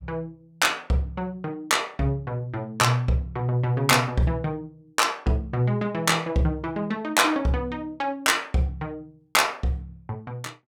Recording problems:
none

